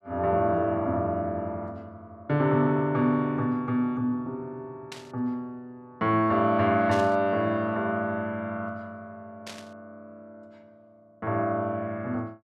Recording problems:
static burst; at 5 s, at 7 s and at 9.5 s; peak -9 dB vs average level

